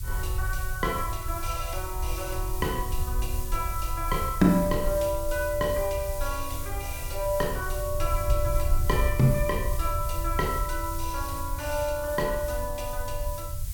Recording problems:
hiss; slope +2 dB per octave, SNR 10 dB
rumble; below 74 Hz, SNR 4 dB

